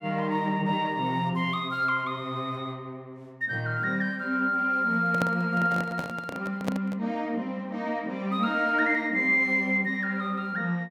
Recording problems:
handling noise; from 5 to 7 s; peak +1 dB vs average level

